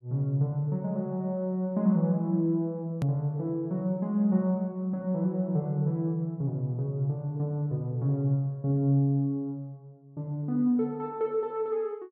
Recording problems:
click at an edit; at 3 s

